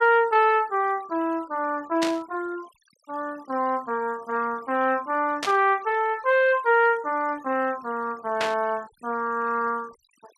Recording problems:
denoising artefacts; signal-to-artefact ratio 26 dB
burst of static; at 2 s, at 5.5 s and at 8.5 s; peak 0 dB vs average level

